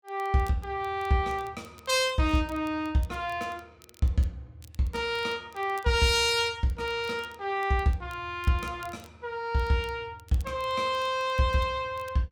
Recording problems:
crackling; vinyl, SNR 28 dB

